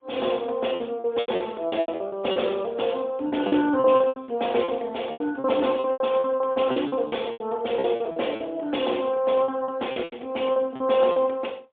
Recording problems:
phone line; 260 Hz to 3.6 kHz, AMR-NB, then MP3
lost packets; 16% of the sound replaced, filled with repeated pitch periods

